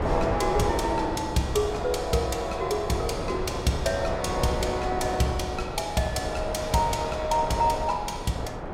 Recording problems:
wind on the microphone; below 760 Hz, SNR 5 dB

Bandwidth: 16 kHz